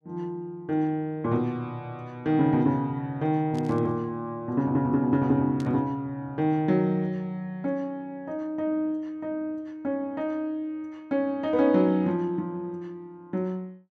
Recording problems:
static burst; at 3.5 s and at 5.5 s; peak -13 dB vs average level

